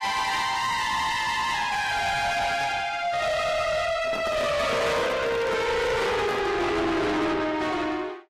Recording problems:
lossy compression; AAC, log-spectral distance 3 dB, nothing above 14.7 kHz
distorted audio; soft clipping, signal-to-distortion ratio 7 dB
handling noise; from 4 to 6.5 s; peak -4 dB vs average level

